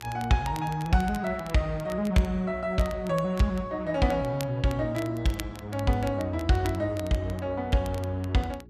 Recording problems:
electrical hum; 60 Hz, harmonics up to 420 Hz, SNR 23 dB
crackling; vinyl, SNR 19 dB

